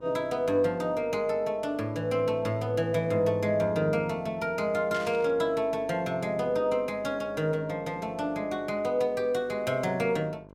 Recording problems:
hum; 50 Hz, harmonics up to 1.6 kHz, SNR 24 dB
burst of static; at 5 s; peak -8 dB vs average level

